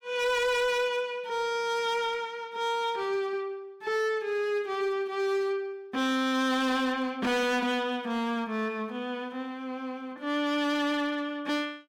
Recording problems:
distortion; hard clipping, signal-to-distortion ratio 11 dB

